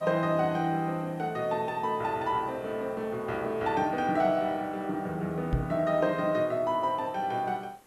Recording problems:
hiss; slope -4 dB per octave, SNR 29 dB
microphone bump; at 5.5 s; peak +4 dB vs average level

